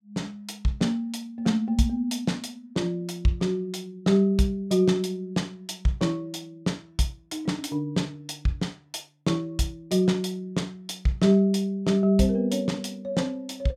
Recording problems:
none

